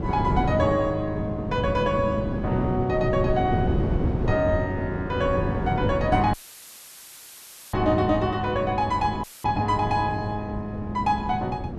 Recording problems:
wind noise; below 310 Hz, SNR 4 dB
audio cutting out; at 6.5 s for 1.5 s and at 9 s; filled with static

